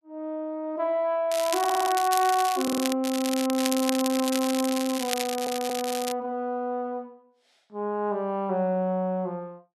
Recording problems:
crackle; from 1.5 to 3 s and from 3 to 6 s; loose cable, SNR 6 dB
audio stuttering; at 1.5 s, at 2.5 s and at 5 s

